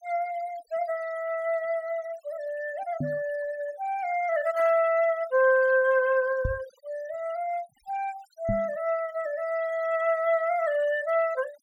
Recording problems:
denoising artefacts; signal-to-artefact ratio 22 dB
microphone bump; at 3 s, at 6.5 s and at 8.5 s; peak +1 dB vs average level

